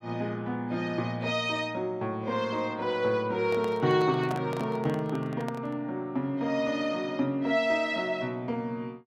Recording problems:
handling noise; from 3.5 to 6 s; peak -3 dB vs average level

